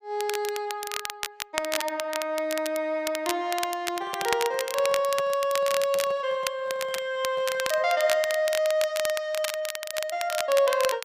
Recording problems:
crackle; vinyl, SNR 7 dB
microphone handling noise; from 4 to 8 s; peak -9 dB vs average level

